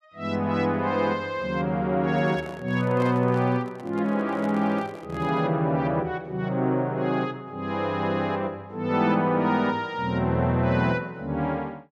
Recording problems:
handling noise; from 2 to 5.5 s; peak -9 dB vs average level

